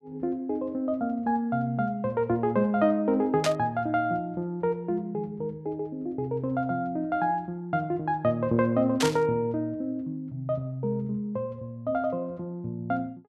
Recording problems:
static burst; at 3.5 s and at 9 s; peak +5 dB vs average level

